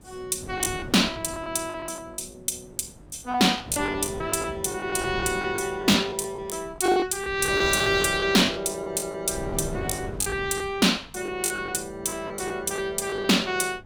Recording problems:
distorted audio; hard clipping, signal-to-distortion ratio 12 dB
wind on the microphone; below 350 Hz, SNR 16 dB
packet loss; 12% of the sound replaced, filled with the last packet

